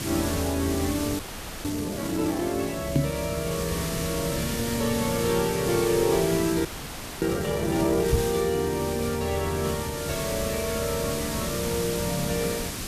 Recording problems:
hiss; SNR 5 dB
audio freezing; at 1 s and at 6.5 s for 0.5 s
knock on the microphone; at 3 s and at 8 s; peak +8 dB vs average level
crackle; from 4 to 7.5 s; loose cable, SNR 29 dB

